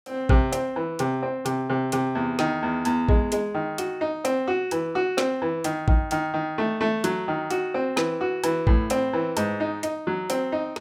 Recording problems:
none

